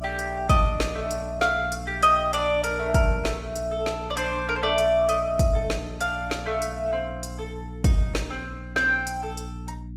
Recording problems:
codec artefacts; Opus, log-spectral distance 3 dB
hum; 60 Hz, harmonics up to 300 Hz, SNR 13 dB

